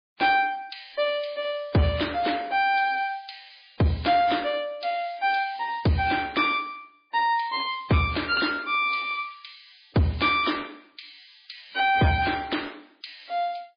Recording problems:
lossy codec; MP3, log-spectral distance 7 dB, nothing above 4.6 kHz
distorted audio; soft clipping, signal-to-distortion ratio 12 dB

